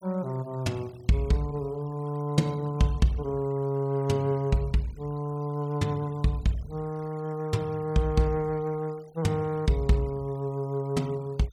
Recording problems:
noise reduction artefacts; signal-to-artefact ratio 26 dB

